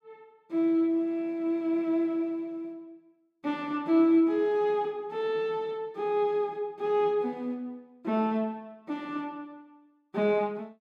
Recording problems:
none

